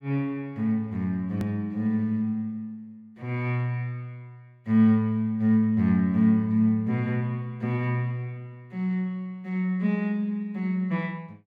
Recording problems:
click at an edit; at 1.5 s

